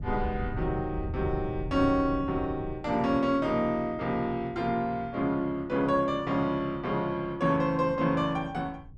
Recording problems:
wind on the microphone; below 130 Hz, SNR 11 dB

